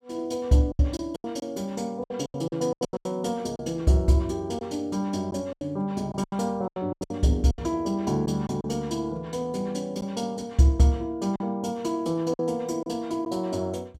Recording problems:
lost packets; 10% of the sound replaced, filled with silence

